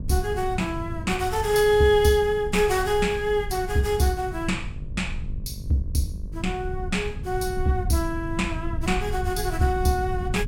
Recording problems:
hum; 50 Hz, harmonics up to 1.1 kHz, SNR 23 dB
low-frequency rumble; below 100 Hz, SNR 9 dB

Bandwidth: 17.5 kHz